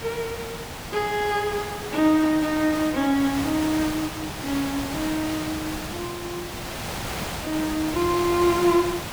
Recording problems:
background hiss; slope -3 dB per octave, SNR 7 dB

